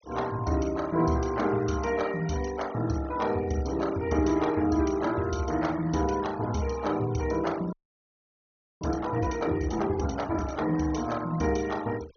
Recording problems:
low-pass filter; nothing above 6.4 kHz
noise reduction artefacts; signal-to-artefact ratio 19 dB
frozen audio; at 7.5 s for 1 s

